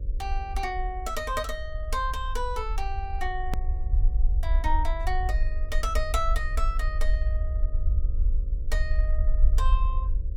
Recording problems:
hum; 50 Hz, harmonics up to 550 Hz, SNR 19 dB
rumble; below 54 Hz, SNR -4 dB
click at an edit; at 3.5 s

